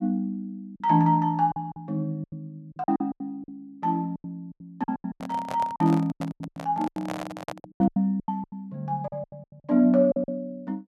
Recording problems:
lost packets; 17% of the sound replaced, filled with silence
microphone handling noise; from 5 to 8 s; peak -3 dB vs average level

